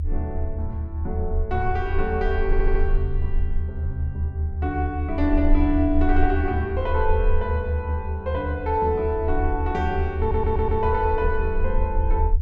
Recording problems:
low-frequency rumble; below 78 Hz, SNR 1 dB
stutter; at 2.5 s and at 10 s

